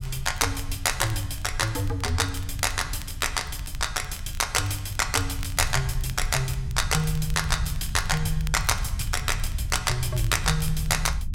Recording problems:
rumble; below 90 Hz, SNR 7 dB
crackling; vinyl, SNR 19 dB

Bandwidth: 16.5 kHz